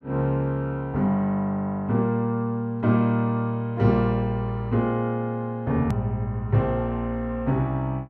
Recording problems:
hard cut with a click; at 6 s

